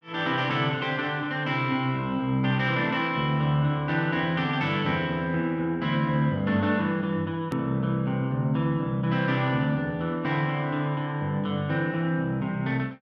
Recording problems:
edit click; at 7.5 s

